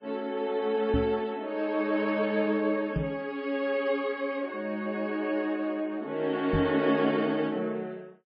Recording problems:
lossy compression; MP3, log-spectral distance 2 dB
knock on the microphone; at 1 s, at 3 s and at 6.5 s; peak +4 dB vs average level

